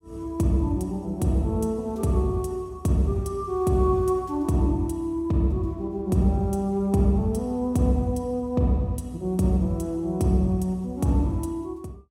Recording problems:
none

